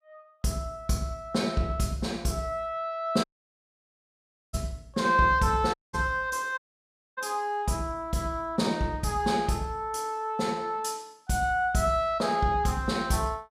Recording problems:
audio cutting out; at 3 s for 1.5 s, at 5.5 s and at 6.5 s for 0.5 s

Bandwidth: 15 kHz